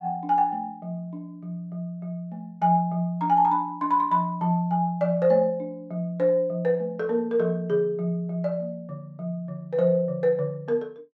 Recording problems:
none

